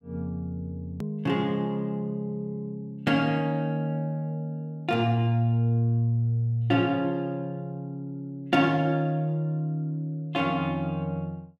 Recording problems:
click at an edit; at 1 s

